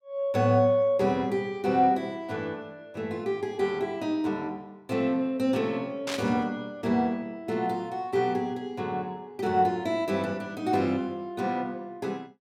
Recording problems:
static burst; at 6 s; peak -1 dB vs average level

